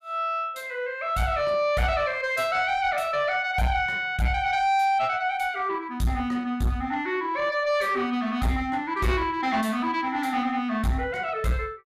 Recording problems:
distortion; soft clipping, signal-to-distortion ratio 11 dB

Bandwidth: 15 kHz